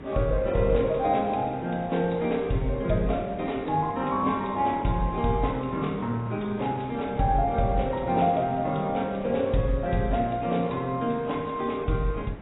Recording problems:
lossy codec; AAC, log-spectral distance 3 dB, nothing above 3.8 kHz
background hiss; SNR 16 dB

